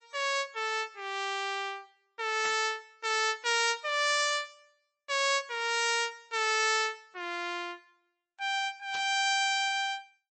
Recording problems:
lossy codec; MP3, log-spectral distance 3 dB, nothing above 8 kHz
static burst; at 2.5 s and at 9 s; peak -6 dB vs average level

